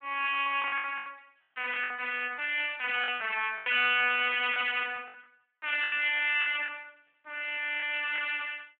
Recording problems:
telephone audio; 280 Hz to 3.4 kHz, Speex
lost packets; 9% of the sound replaced, filled with the last packet

